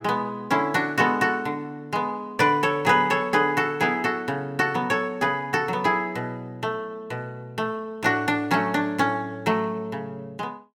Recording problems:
none

